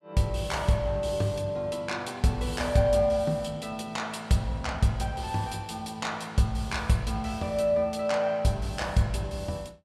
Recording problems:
none

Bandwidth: 15.5 kHz